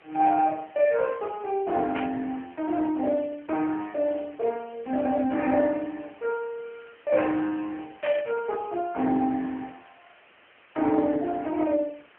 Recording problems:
telephone audio; 220 Hz to 3.2 kHz, AMR-NB
hiss; SNR 27 dB
static burst; at 2 s and at 8 s; peak -5 dB vs average level

